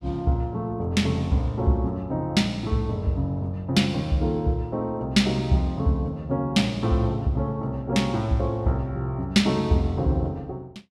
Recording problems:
none

